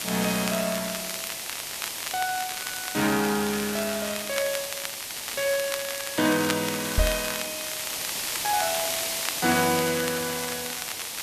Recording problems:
background hiss; SNR 2 dB
crackling; vinyl, SNR 8 dB
microphone thump; at 7 s; peak +6 dB vs average level

